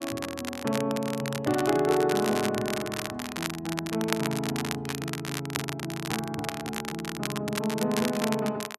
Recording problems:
crackle; vinyl, SNR 5 dB

